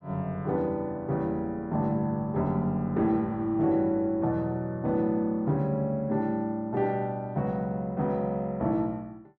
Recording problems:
none

